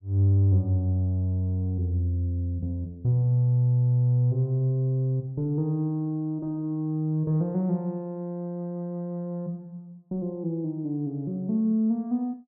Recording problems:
none

